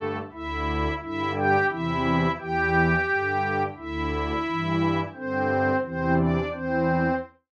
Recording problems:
none

